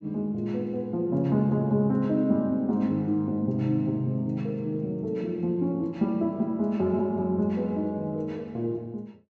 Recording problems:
treble missing; nothing above 7.9 kHz

